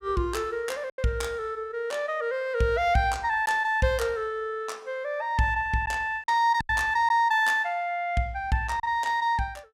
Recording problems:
packet loss; 3% of the sound replaced, filled with silence

